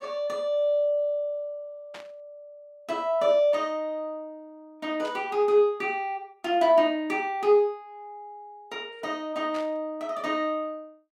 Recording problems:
burst of static; at 2 s, at 5 s and at 9.5 s; peak -12 dB vs average level

